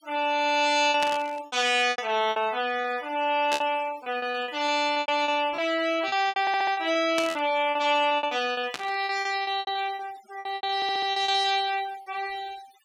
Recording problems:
noise reduction artefacts; signal-to-artefact ratio 19 dB
lost packets; 14% of the sound replaced, filled with repeated pitch periods
static burst; 4 times, first at 1 s; peak -1 dB vs average level
stutter; at 6.5 s and at 11 s

